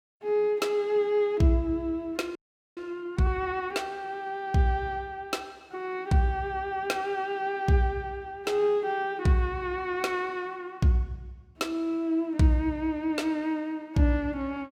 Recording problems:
audio freezing; at 2.5 s

